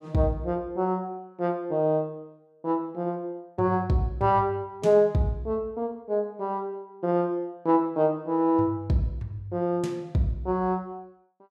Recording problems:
none

